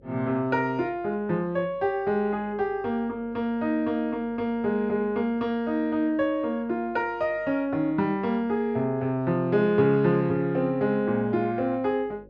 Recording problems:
electrical hum; 50 Hz, harmonics up to 550 Hz, SNR 28 dB

